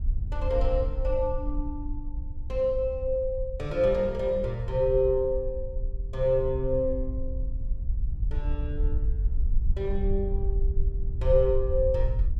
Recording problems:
wind on the microphone; below 60 Hz, SNR 4 dB

